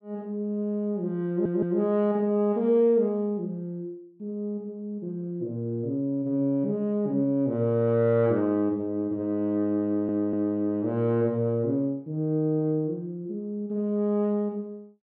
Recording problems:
audio stuttering; at 1.5 s and at 10 s

